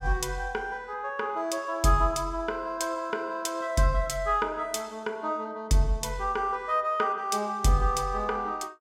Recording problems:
none

